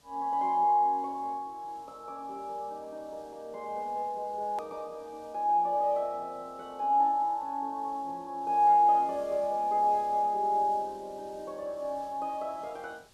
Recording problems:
background hiss; SNR 30 dB
click at an edit; at 4.5 s

